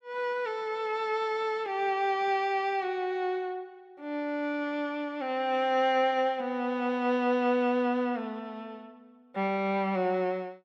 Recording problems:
none

